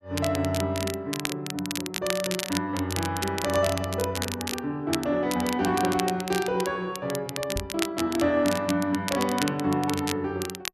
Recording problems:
crackling; vinyl, SNR 7 dB
microphone thump; at 7.5 s; peak -2 dB vs average level

